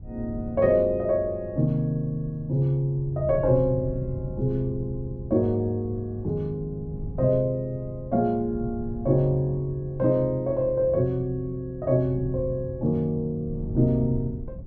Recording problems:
treble missing; nothing above 8 kHz
wind on the microphone; below 140 Hz, SNR 13 dB

